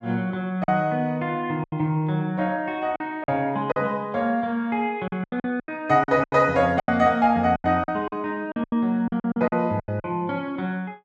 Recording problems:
packet loss; 11% of the sound replaced, filled with silence

